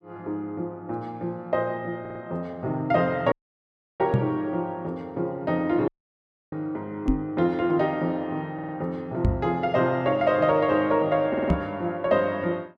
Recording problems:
stutter; at 2 s, at 8.5 s and at 11 s
dropout; at 3.5 s for 0.5 s and at 6 s for 0.5 s
microphone bump; 4 times, first at 4 s; peak +7 dB vs average level

